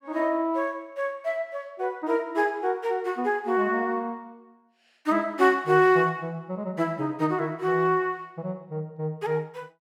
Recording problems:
none

